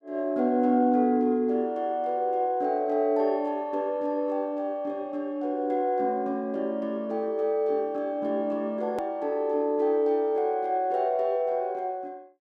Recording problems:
edit click; at 9 s

